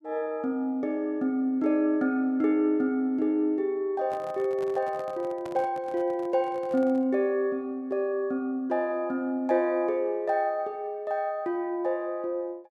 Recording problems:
handling noise; from 4 to 7 s; peak -11 dB vs average level

